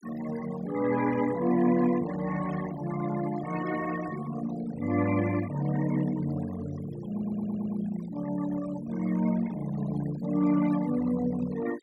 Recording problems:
noise reduction artefacts; signal-to-artefact ratio 16 dB
audio stuttering; at 7 s

